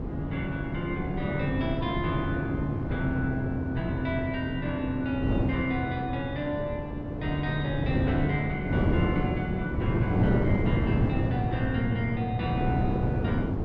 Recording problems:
wind on the microphone; below 330 Hz, SNR 0 dB

